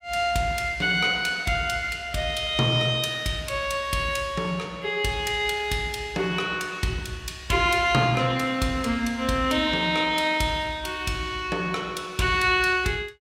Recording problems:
none

